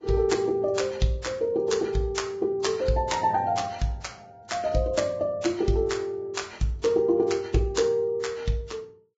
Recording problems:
codec artefacts; Vorbis, log-spectral distance 3 dB, nothing above 7.6 kHz

